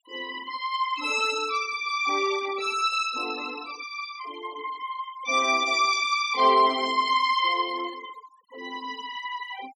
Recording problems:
noise reduction artefacts; signal-to-artefact ratio 18 dB

